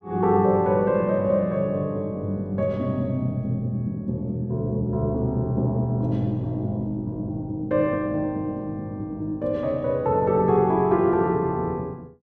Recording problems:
none

